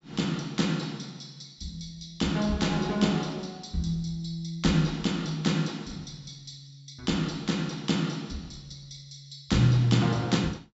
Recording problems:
treble cut off; nothing above 7.5 kHz

